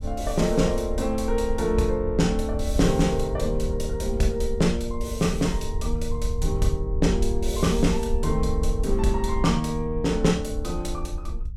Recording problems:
rumble; below 64 Hz, SNR 5 dB

